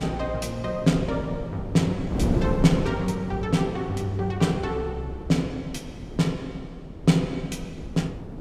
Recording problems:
wind noise; below 310 Hz, SNR 8 dB

